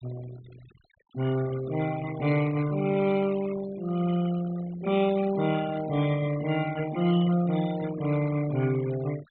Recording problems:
treble cut off; nothing above 4.2 kHz
denoising artefacts; signal-to-artefact ratio 16 dB

